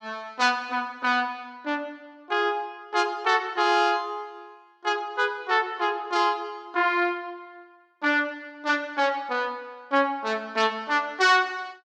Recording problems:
none

